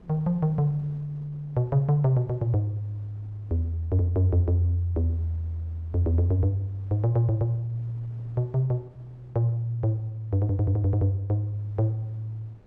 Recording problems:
wind on the microphone; below 330 Hz, SNR 27 dB

